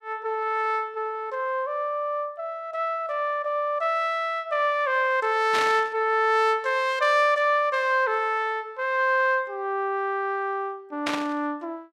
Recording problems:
static burst; at 5.5 s and at 11 s; peak 0 dB vs average level

